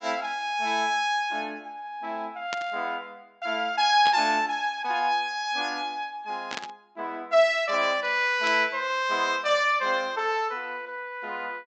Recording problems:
low-pass filter; nothing above 8 kHz
static burst; 4 times, first at 2.5 s; peak -4 dB vs average level

